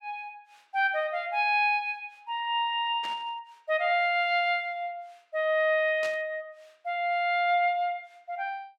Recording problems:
static burst; at 3 s and at 6 s; peak -9 dB vs average level

